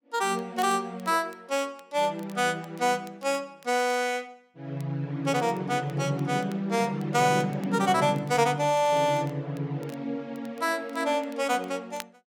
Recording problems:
crackling; vinyl, SNR 27 dB

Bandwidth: 17 kHz